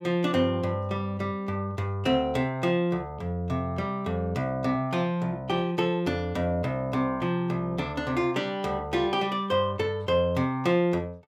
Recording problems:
none

